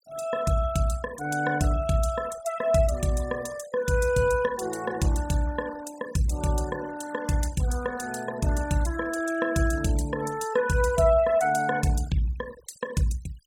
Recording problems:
denoising artefacts; signal-to-artefact ratio 17 dB

